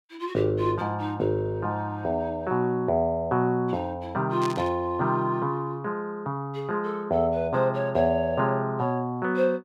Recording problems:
static burst; at 4.5 s; peak -7 dB vs average level

